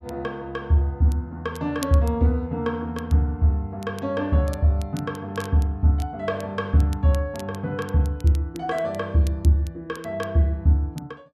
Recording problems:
crackle; vinyl, SNR 23 dB

